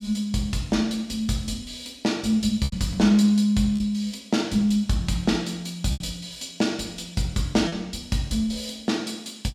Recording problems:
packet loss; 3% of the sound replaced, filled with repeated pitch periods

